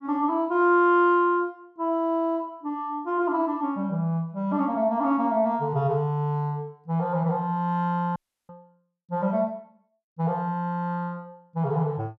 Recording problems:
dropout; at 8 s

